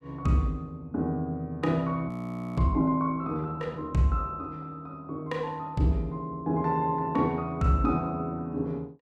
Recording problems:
frozen audio; at 2 s

